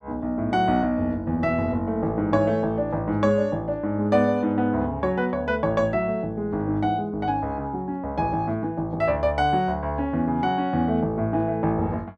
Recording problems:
none

